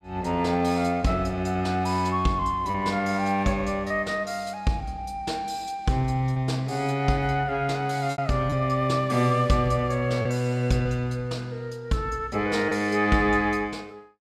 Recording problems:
packet loss; 1.9% of the sound replaced, filled with repeated pitch periods

